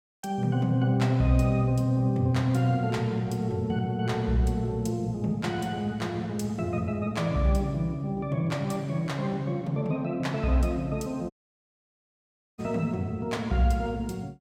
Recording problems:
dropout; at 11 s for 1.5 s

